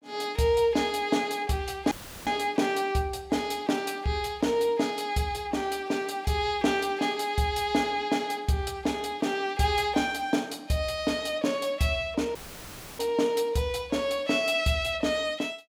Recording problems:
audio cutting out; at 2 s and at 12 s for 0.5 s; filled with static

